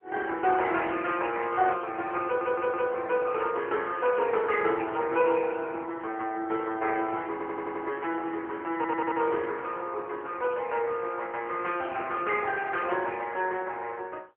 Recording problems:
phone line; 280 Hz to 3.2 kHz, AMR-NB
stutter; at 2.5 s, at 7.5 s and at 9 s

